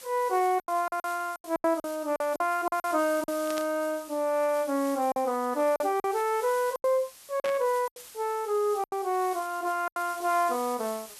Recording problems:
hiss; slope +1 dB per octave, SNR 17 dB
lost packets; 10% of the sound replaced, filled with silence
burst of static; at 3.5 s and at 7.5 s; peak -6 dB vs average level

